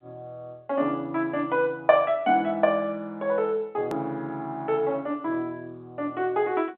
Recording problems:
telephone audio; 220 Hz to 3.6 kHz, G.711
click at an edit; at 4 s

